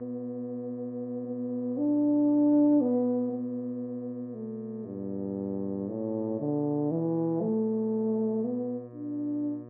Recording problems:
hum; 60 Hz, harmonics up to 1.2 kHz, SNR 17 dB

